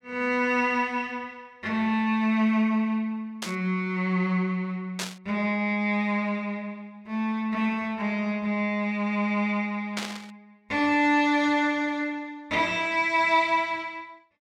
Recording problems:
static burst; at 3.5 s, at 5 s and at 10 s; peak -1 dB vs average level

